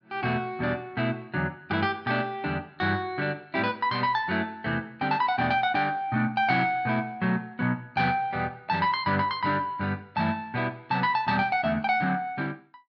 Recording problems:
none

